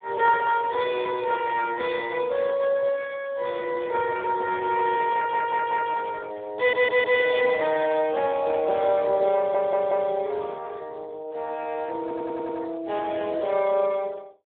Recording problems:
telephone audio; 340 Hz to 3.4 kHz, Speex
burst of static; at 1.5 s and at 8.5 s; peak -13 dB vs average level
audio stuttering; 4 times, first at 5 s

